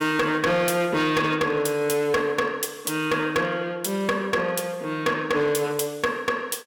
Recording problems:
distortion; hard clipping, signal-to-distortion ratio 6 dB

